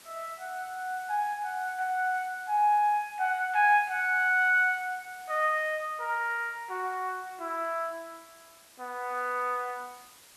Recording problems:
hiss; slope 0 dB per octave, SNR 24 dB

